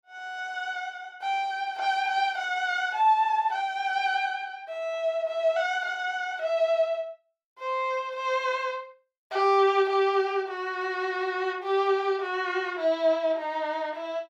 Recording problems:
none

